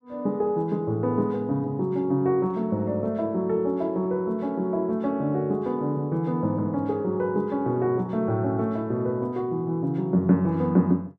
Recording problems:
none

